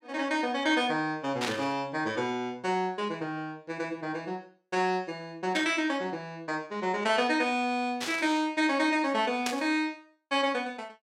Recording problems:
burst of static; 4 times, first at 1.5 s; peak +2 dB vs average level

